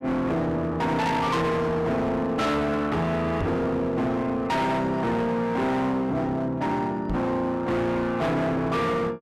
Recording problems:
distortion; hard clipping, uneven, signal-to-distortion ratio 7 dB
microphone bump; at 3.5 s and at 7 s; peak 0 dB vs average level

